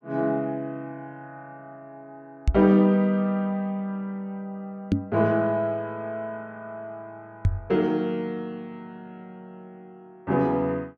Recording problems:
knock on the microphone; at 2.5 s, at 5 s and at 7.5 s; peak +7 dB vs average level

